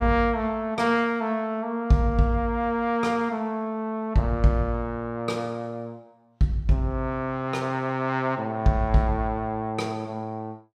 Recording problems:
none

